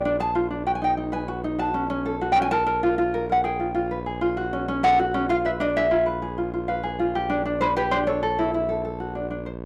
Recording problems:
distortion; soft clipping, signal-to-distortion ratio 11 dB
hum; 60 Hz, harmonics up to 1.2 kHz, SNR 10 dB

